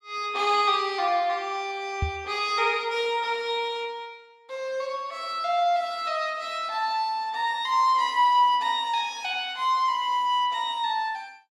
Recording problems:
microphone thump; at 2 s; peak +1 dB vs average level

